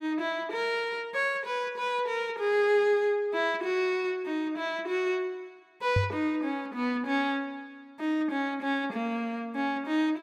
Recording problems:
microphone bump; at 6 s; peak +5 dB vs average level

